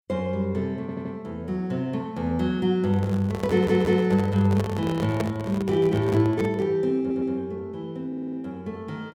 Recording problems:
stutter; 4 times, first at 1 s
handling noise; from 3 to 6.5 s; peak 0 dB vs average level

